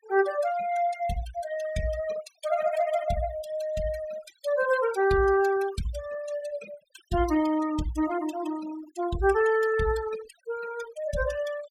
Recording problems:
noise reduction artefacts; signal-to-artefact ratio 15 dB

